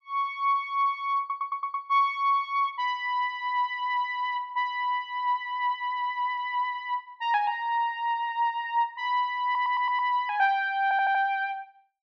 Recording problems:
audio stuttering; at 1 s, at 9.5 s and at 11 s

